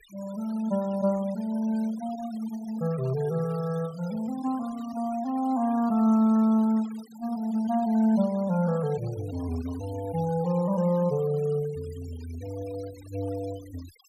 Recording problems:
noise reduction artefacts; signal-to-artefact ratio 22 dB

